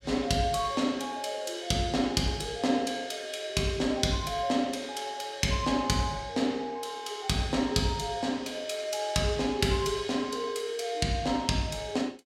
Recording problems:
none

